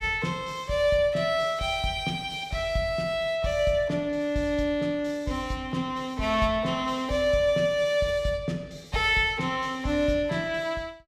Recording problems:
none

